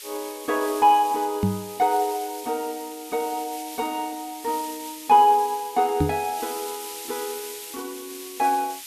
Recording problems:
background hiss; SNR 13 dB
microphone bump; at 1.5 s and at 6 s; peak +4 dB vs average level

